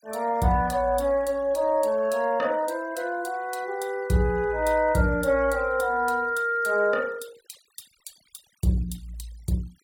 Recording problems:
noise reduction artefacts; signal-to-artefact ratio 25 dB

